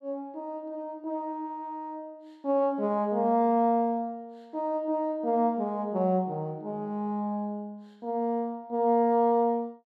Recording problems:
none

